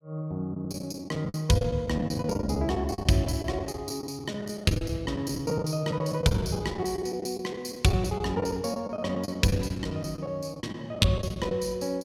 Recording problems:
packet loss; 15% of the sound replaced, filled with the last packet

